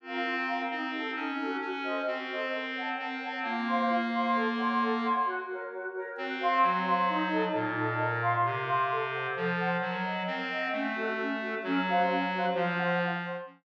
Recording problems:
none

